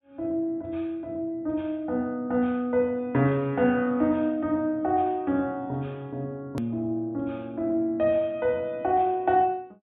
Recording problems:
treble missing; nothing above 4 kHz
edit click; at 6.5 s

